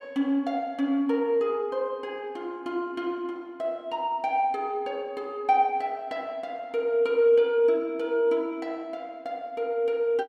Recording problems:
none

